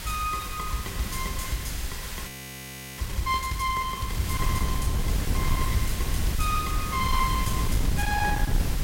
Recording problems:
distortion; hard clipping, signal-to-distortion ratio 12 dB
hiss; SNR 6 dB
wind noise; below 120 Hz, SNR 1 dB
frozen audio; at 2.5 s for 0.5 s

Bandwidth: 16 kHz